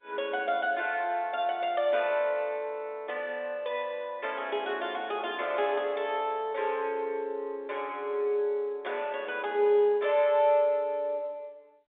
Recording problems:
telephone audio; 240 Hz to 3.6 kHz, G.711

